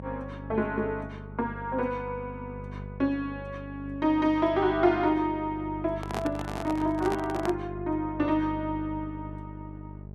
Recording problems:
hum; 50 Hz, harmonics up to 650 Hz, SNR 12 dB
handling noise; from 6 to 7.5 s; peak -1 dB vs average level

